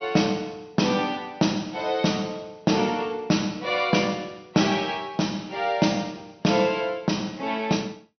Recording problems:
treble cut off; nothing above 6.1 kHz

